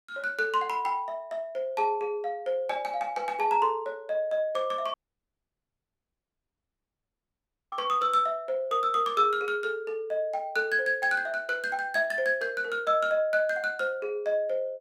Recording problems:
audio cutting out; at 5 s for 3 s

